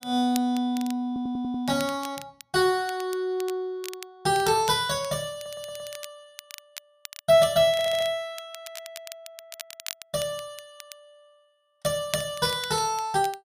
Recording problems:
crackle; vinyl, SNR 16 dB
audio stuttering; at 1 s, at 5.5 s and at 7.5 s

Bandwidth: 15 kHz